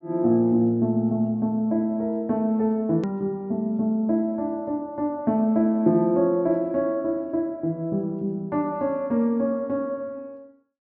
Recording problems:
low-pass filter; nothing above 8 kHz
click at an edit; at 3 s

